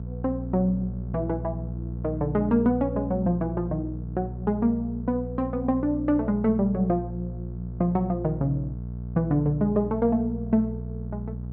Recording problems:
hum; 60 Hz, harmonics up to 480 Hz, SNR 8 dB

